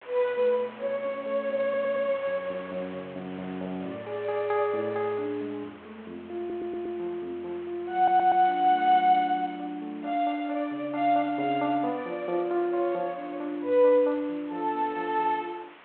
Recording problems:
telephone audio; 300 Hz to 3.4 kHz, G.726
background hiss; SNR 25 dB
wind on the microphone; below 2.1 kHz, SNR 24 dB
stutter; at 1.5 s, at 6.5 s and at 8 s

